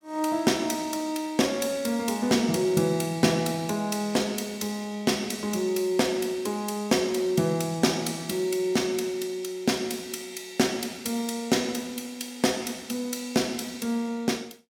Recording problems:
none

